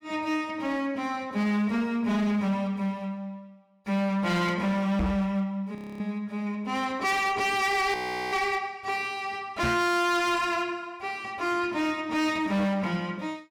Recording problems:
distortion; hard clipping, signal-to-distortion ratio 10 dB
microphone bump; at 5 s and at 9.5 s; peak +2 dB vs average level
audio freezing; at 6 s and at 8 s

